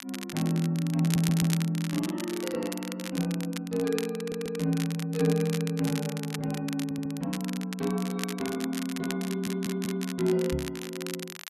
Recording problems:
crackle; vinyl, SNR 10 dB
stutter; 4 times, first at 1 s
knock on the microphone; at 11 s; peak 0 dB vs average level

